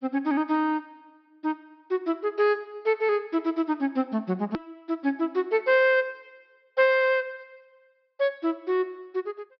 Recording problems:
low-pass filter; nothing above 5.5 kHz
hard cut with a click; at 4.5 s

